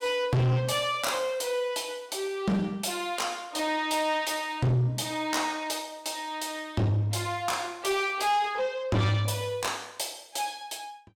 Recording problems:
distortion; soft clipping, signal-to-distortion ratio 7 dB

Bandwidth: 17.5 kHz